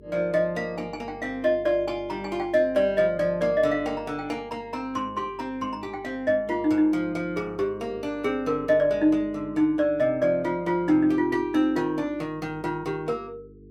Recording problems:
hum; 50 Hz, harmonics up to 450 Hz, SNR 22 dB

